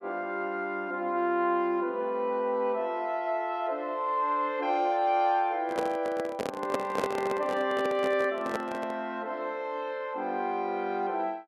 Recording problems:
handling noise; from 5.5 to 9 s; peak +3 dB vs average level

